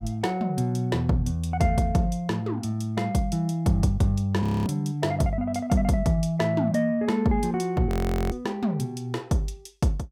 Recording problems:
audio freezing; at 4.5 s and at 8 s

